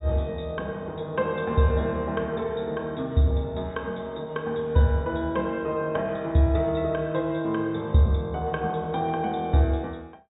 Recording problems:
treble cut off; nothing above 4 kHz

